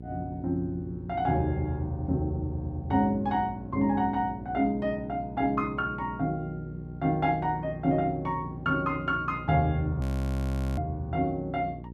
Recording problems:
electrical hum; 60 Hz, harmonics up to 540 Hz, SNR 13 dB
audio freezing; at 10 s for 1 s

